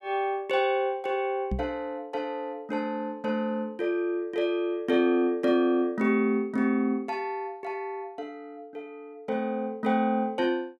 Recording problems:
microphone bump; at 1.5 s; peak 0 dB vs average level

